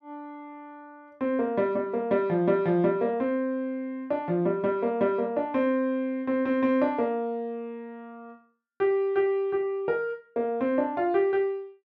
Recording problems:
none

